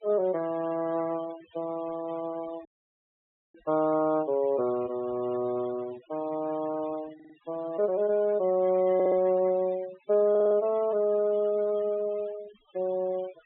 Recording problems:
low-pass filter; nothing above 3.7 kHz
noise reduction artefacts; signal-to-artefact ratio 21 dB
audio cutting out; at 2.5 s for 1 s
stutter; at 7 s, at 9 s and at 10 s

